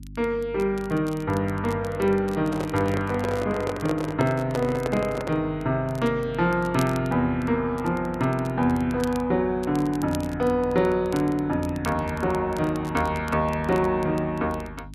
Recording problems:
hum; 50 Hz, harmonics up to 300 Hz, SNR 19 dB
crackling; vinyl, SNR 22 dB
handling noise; from 2.5 to 5.5 s; peak 0 dB vs average level

